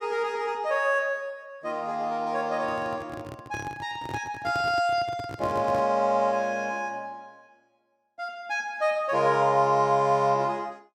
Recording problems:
microphone handling noise; from 2.5 to 6 s; peak -6 dB vs average level

